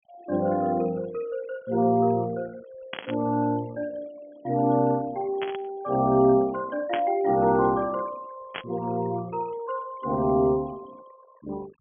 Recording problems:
treble cut off; nothing above 3.3 kHz
denoising artefacts; signal-to-artefact ratio 25 dB
static burst; 4 times, first at 3 s; peak -1 dB vs average level

